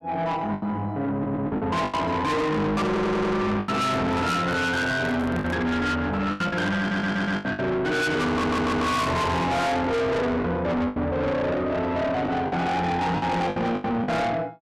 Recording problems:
distorted audio; soft clipping, signal-to-distortion ratio 6 dB
lost packets; 8% of the sound replaced, filled with the last packet
stutter; 4 times, first at 1 s
microphone handling noise; from 3.5 to 5.5 s; peak -1 dB vs average level

